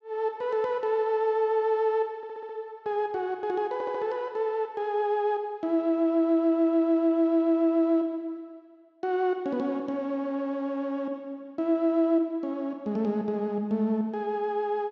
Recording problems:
audio stuttering; at 2 s and at 3.5 s

